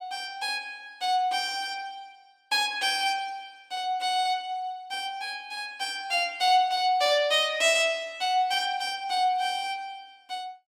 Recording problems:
none

